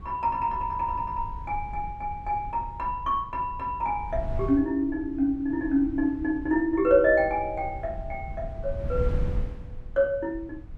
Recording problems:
wind noise; below 100 Hz, SNR 11 dB

